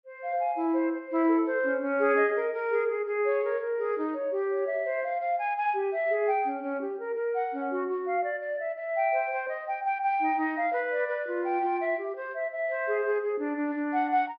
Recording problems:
treble missing; nothing above 5.5 kHz

